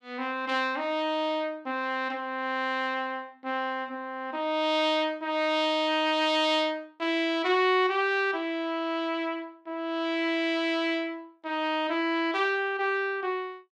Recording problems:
none

